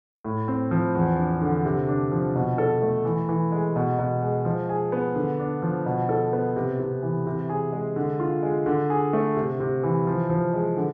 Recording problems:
none

